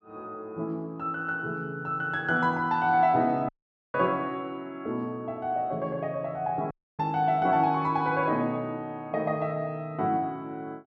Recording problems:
dropout; at 3.5 s and at 6.5 s

